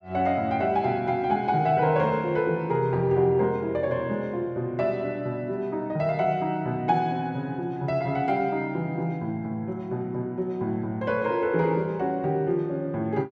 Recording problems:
none

